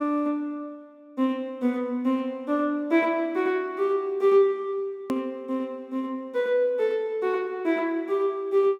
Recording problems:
hard cut with a click; at 5 s

